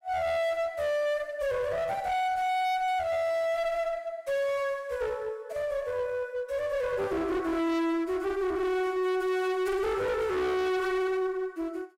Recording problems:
distorted audio; hard clipping, uneven, signal-to-distortion ratio 6 dB

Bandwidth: 16 kHz